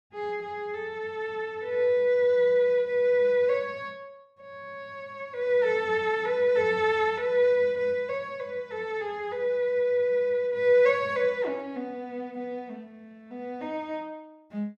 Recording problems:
none

